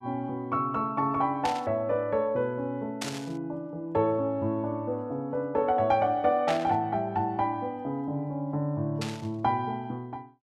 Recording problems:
static burst; 4 times, first at 1.5 s; peak -1 dB vs average level

